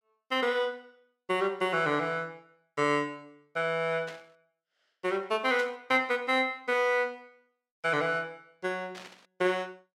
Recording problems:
static burst; at 4 s, at 5.5 s and at 9 s; peak -11 dB vs average level

